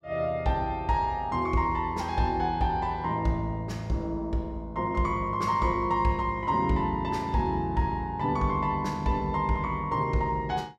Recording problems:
none

